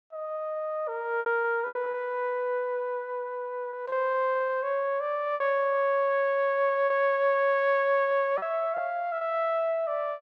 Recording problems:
packet loss; 6% of the sound replaced, filled with repeated pitch periods

